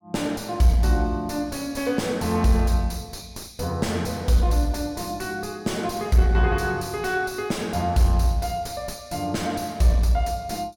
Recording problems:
distorted audio; soft clipping, signal-to-distortion ratio 8 dB

